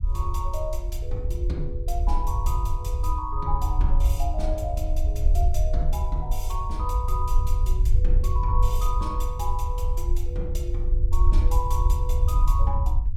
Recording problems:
low-frequency rumble; below 62 Hz, SNR -7 dB

